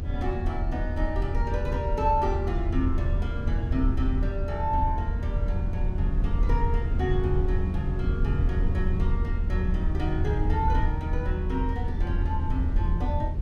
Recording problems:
low-frequency rumble; below 82 Hz, SNR -4 dB

